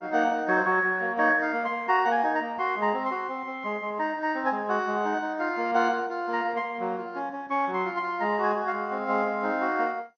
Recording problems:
lossy codec; MP2, log-spectral distance 2 dB, nothing above 6 kHz

